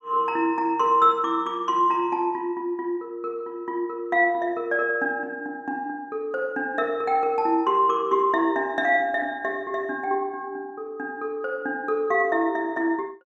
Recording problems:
none

